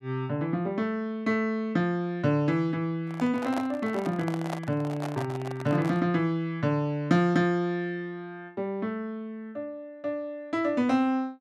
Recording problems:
microphone handling noise; from 3 to 6 s; peak -2 dB vs average level

